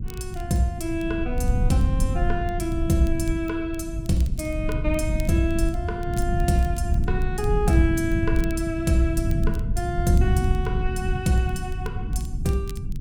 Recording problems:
rumble; below 110 Hz, SNR 1 dB
crackling; vinyl, SNR 25 dB

